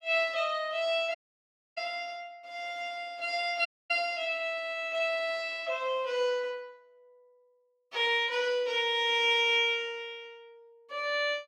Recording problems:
audio cutting out; at 1 s for 0.5 s and at 3.5 s

